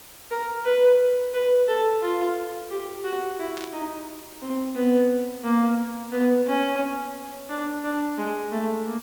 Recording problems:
background hiss; slope -2 dB per octave, SNR 19 dB
burst of static; at 3.5 s; peak -9 dB vs average level

